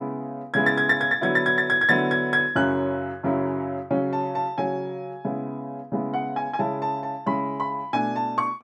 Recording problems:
none

